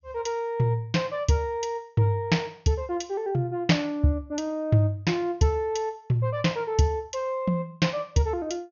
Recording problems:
treble missing; nothing above 6.8 kHz

